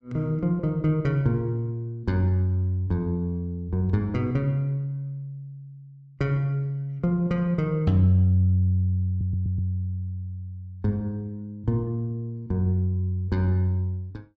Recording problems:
stutter; at 9 s

